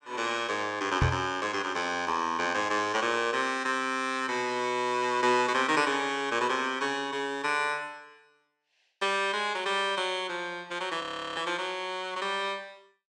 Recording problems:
microphone bump; at 1 s; peak +5 dB vs average level
audio freezing; at 11 s

